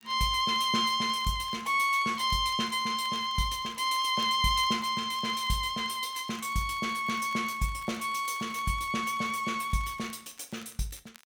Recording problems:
crackling; vinyl, SNR 26 dB

